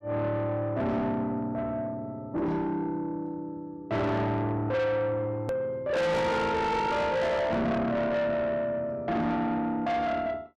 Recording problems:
distorted audio; soft clipping, signal-to-distortion ratio 6 dB
click at an edit; at 5.5 s

